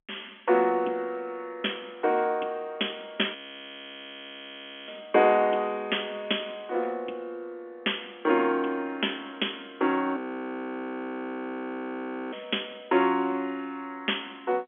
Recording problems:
phone line; 240 Hz to 3.4 kHz, G.711
audio freezing; at 3.5 s for 1.5 s and at 10 s for 2 s

